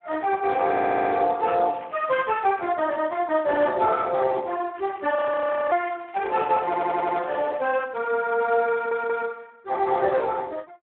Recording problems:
phone line; 240 Hz to 3.1 kHz, Speex
audio stuttering; at 0.5 s, at 6.5 s and at 8.5 s
crackle; at 1.5 s and from 5 to 8 s; loose cable, SNR 22 dB
audio freezing; at 5 s for 0.5 s

